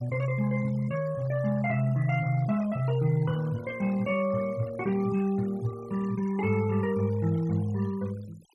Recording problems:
denoising artefacts; signal-to-artefact ratio 20 dB

